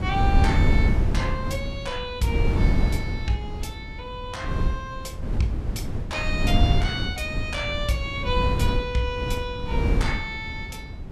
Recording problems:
wind on the microphone; below 140 Hz, SNR -3 dB

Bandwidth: 14.5 kHz